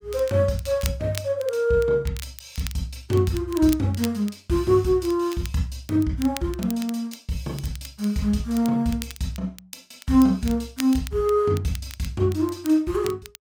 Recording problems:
crackling; vinyl, SNR 17 dB

